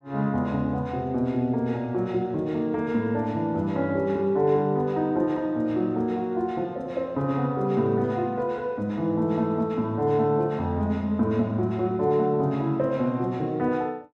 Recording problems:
none

